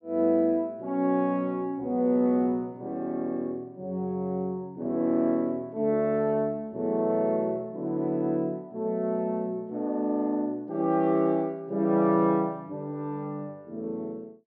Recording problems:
none

